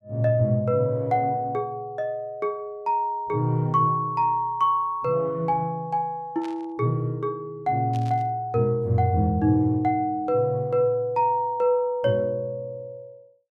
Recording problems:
static burst; at 6.5 s and at 8 s; peak -15 dB vs average level

